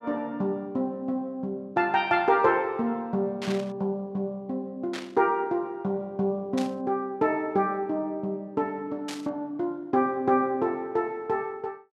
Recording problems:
burst of static; 4 times, first at 3.5 s; peak -5 dB vs average level

